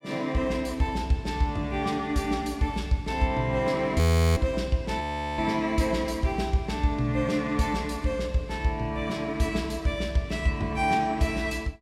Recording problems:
frozen audio; at 4 s and at 5 s

